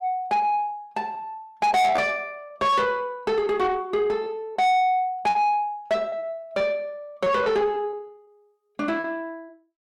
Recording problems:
distorted audio; soft clipping, signal-to-distortion ratio 6 dB
lost packets; 6% of the sound replaced, filled with repeated pitch periods

